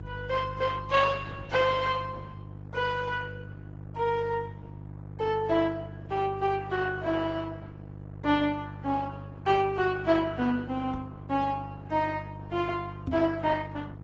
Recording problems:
lossy compression; Opus, then AAC, log-spectral distance 3 dB, nothing above 7.6 kHz
mains hum; 50 Hz, harmonics up to 800 Hz, SNR 11 dB
microphone bump; at 11 s and at 13 s; peak +2 dB vs average level

